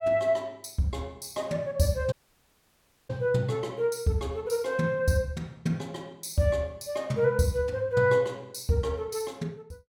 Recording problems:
dropout; at 2 s for 1 s

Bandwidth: 17 kHz